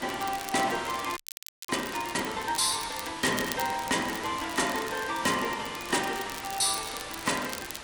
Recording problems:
lossy compression; AAC, log-spectral distance 8 dB
distortion; hard clipping, signal-to-distortion ratio 8 dB
background hiss; SNR 10 dB
crackle; vinyl, SNR 12 dB
frozen audio; at 1 s for 0.5 s

